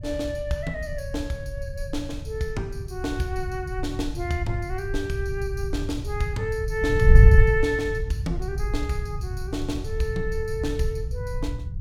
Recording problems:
wind noise; below 94 Hz, SNR -1 dB

